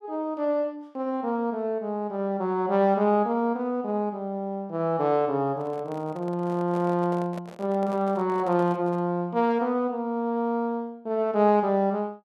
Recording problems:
handling noise; from 5.5 to 9 s; peak -10 dB vs average level

